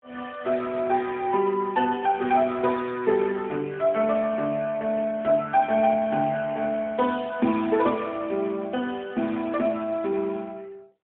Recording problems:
telephone audio; 150 Hz to 3.5 kHz, AMR-NB, then MP3

